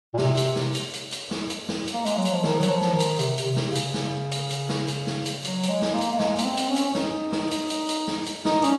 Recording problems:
codec artefacts; AAC, log-spectral distance 3 dB, nothing above 11.3 kHz

